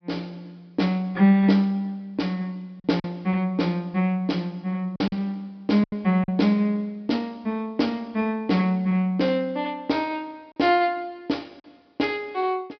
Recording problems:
treble cut off; nothing above 5.5 kHz
packet loss; 2% of the sound replaced, filled with silence

